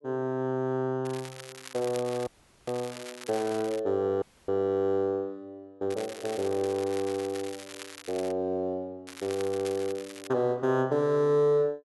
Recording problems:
crackling; from 1 to 4 s, from 6 to 8.5 s and from 9 to 10 s; loose cable, SNR 15 dB
dropout; at 2.5 s and at 4 s

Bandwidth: 11.5 kHz